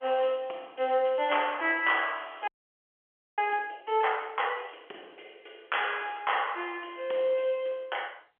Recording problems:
telephone audio; 320 Hz to 3.3 kHz, G.711
frozen audio; at 2.5 s for 1 s

